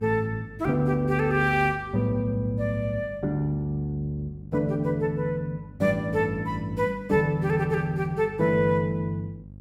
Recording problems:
hum; 50 Hz, harmonics up to 550 Hz, SNR 19 dB

